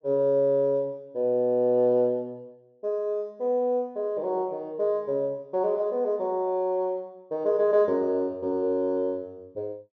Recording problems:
treble cut off; nothing above 6.8 kHz

